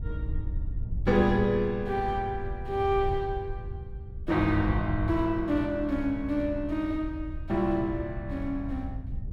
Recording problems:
wind on the microphone; below 92 Hz, SNR 9 dB

